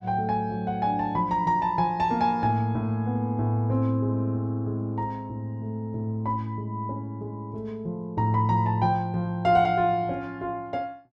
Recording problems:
none

